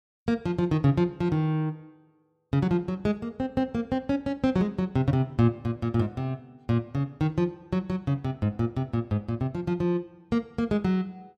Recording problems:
none

